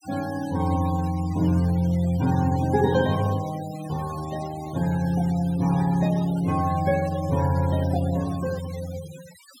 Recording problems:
noise reduction artefacts; signal-to-artefact ratio 18 dB

